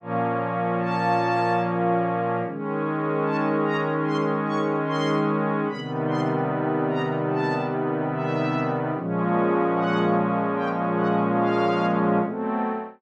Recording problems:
none

